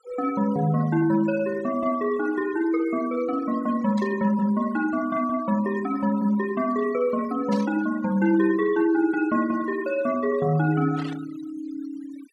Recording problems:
noise reduction artefacts; signal-to-artefact ratio 18 dB
burst of static; at 4 s, at 7.5 s and at 11 s; peak -14 dB vs average level

